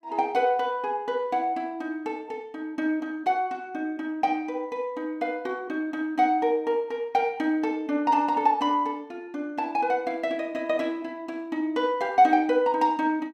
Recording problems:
none

